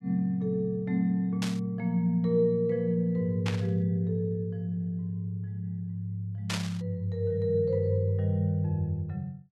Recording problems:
burst of static; at 1.5 s, at 3.5 s and at 6.5 s; peak 0 dB vs average level

